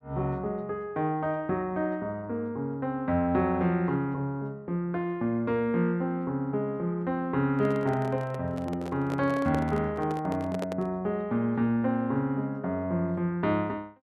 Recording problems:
handling noise; from 7.5 to 11 s; peak -2 dB vs average level

